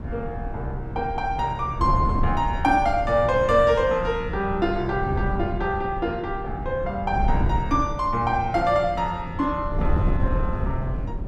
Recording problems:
wind on the microphone; below 130 Hz, SNR 6 dB

